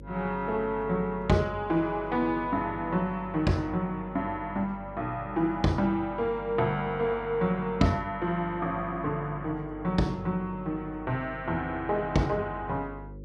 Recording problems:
hum; 50 Hz, harmonics up to 550 Hz, SNR 16 dB

